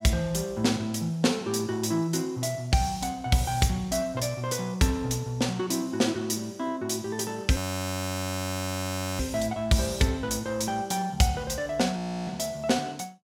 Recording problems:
audio freezing; at 7.5 s for 1.5 s and at 12 s

